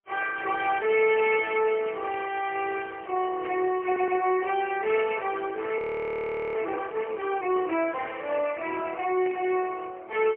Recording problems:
telephone audio; 300 Hz to 3.1 kHz, AMR-NB, then MP3
burst of static; 4 times, first at 1.5 s; peak -12 dB vs average level
audio stuttering; at 4 s
frozen audio; at 6 s for 1 s

